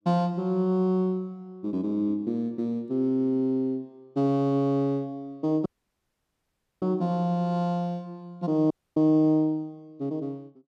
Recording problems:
dropout; at 5.5 s for 1 s and at 8.5 s

